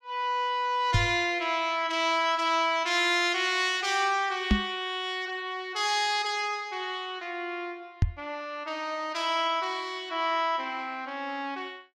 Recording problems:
knock on the microphone; at 1 s, at 4.5 s and at 8 s; peak +7 dB vs average level

